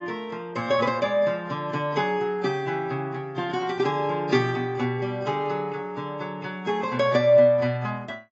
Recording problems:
lossy codec; AAC, log-spectral distance 2 dB, nothing above 7.6 kHz

